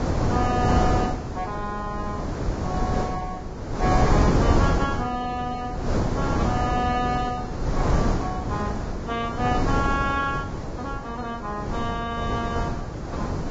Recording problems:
lossy compression; Vorbis, log-spectral distance 3 dB
wind on the microphone; below 480 Hz, SNR -2 dB

